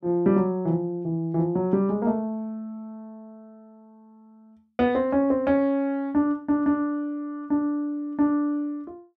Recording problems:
none

